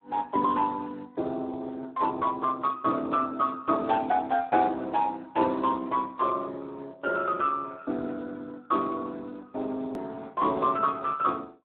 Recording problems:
phone line; 170 Hz to 3.6 kHz, Speex
edit click; at 10 s

